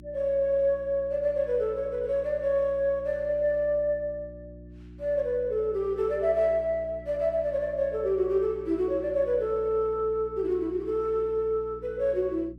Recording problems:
electrical hum; 60 Hz, harmonics up to 360 Hz, SNR 19 dB

